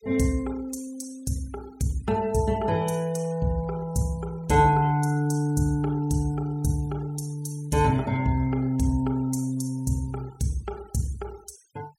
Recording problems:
denoising artefacts; signal-to-artefact ratio 24 dB

